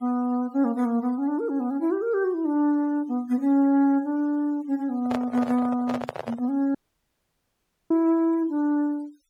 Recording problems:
denoising artefacts; signal-to-artefact ratio 26 dB
microphone handling noise; from 5 to 6.5 s; peak -2 dB vs average level
audio cutting out; at 7 s for 1 s

